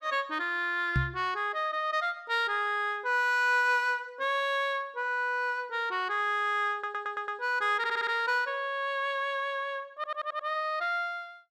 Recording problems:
microphone bump; at 1 s; peak +4 dB vs average level
audio stuttering; at 6.5 s, at 8 s and at 10 s

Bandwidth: 14.5 kHz